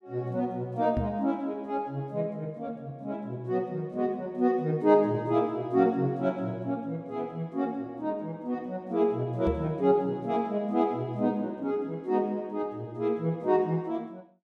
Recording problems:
knock on the microphone; at 1 s and at 9.5 s; peak +2 dB vs average level

